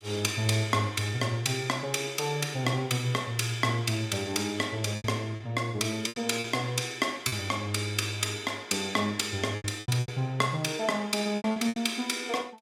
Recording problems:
lost packets; 6% of the sound replaced, filled with repeated pitch periods

